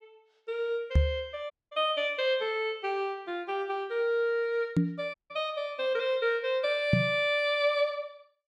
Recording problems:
knock on the microphone; at 1 s, at 5 s and at 7 s; peak +9 dB vs average level
audio cutting out; at 1.5 s and at 5 s

